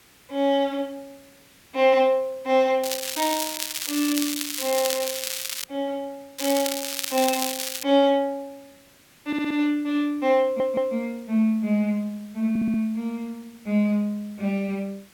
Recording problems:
background hiss; slope -1 dB per octave, SNR 28 dB
crackle; from 3 to 5.5 s and from 6.5 to 8 s; loose cable, SNR 4 dB
stutter; at 9.5 s, at 10 s and at 12 s

